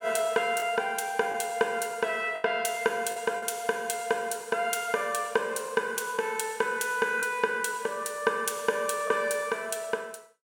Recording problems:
packet loss; 3% of the sound replaced, filled with the last packet

